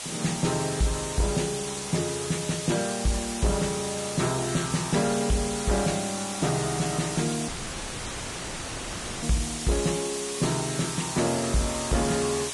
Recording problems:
lossy compression; Vorbis, log-spectral distance 14 dB, nothing above 10.1 kHz
distorted audio; soft clipping, signal-to-distortion ratio 11 dB
background hiss; slope 0 dB per octave, SNR 4 dB
audio cutting out; at 7.5 s for 2 s

